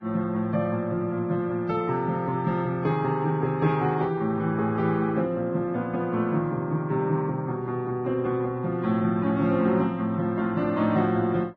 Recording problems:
lossy compression; Vorbis, log-spectral distance 2 dB

